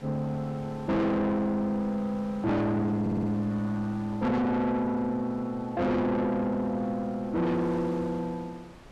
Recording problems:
distorted audio; soft clipping, signal-to-distortion ratio 7 dB
wind noise; below 1.3 kHz, SNR 21 dB
audio stuttering; at 3 s

